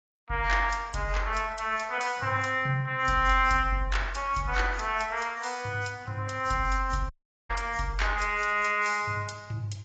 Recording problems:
lossy codec; AAC, log-spectral distance 3 dB, nothing above 7.6 kHz
audio cutting out; at 7 s

